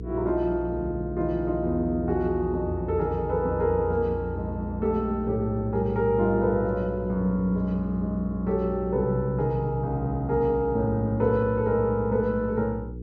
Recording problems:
low-pass filter; nothing above 6.6 kHz
hum; 60 Hz, harmonics up to 480 Hz, SNR 10 dB

